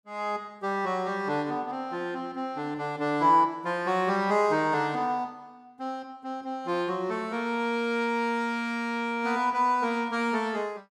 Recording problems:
none

